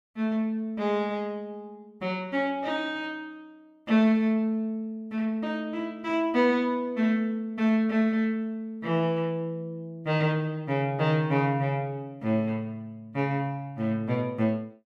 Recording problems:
none

